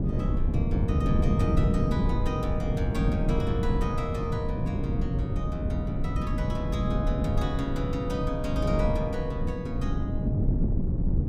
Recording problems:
wind noise; below 190 Hz, SNR -6 dB

